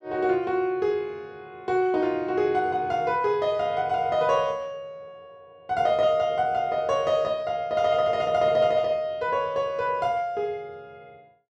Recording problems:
none

